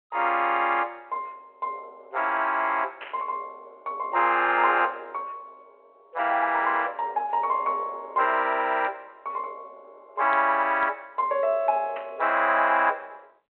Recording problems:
telephone audio; 320 Hz to 3.3 kHz, G.726
static burst; at 3 s and at 12 s; peak -9 dB vs average level

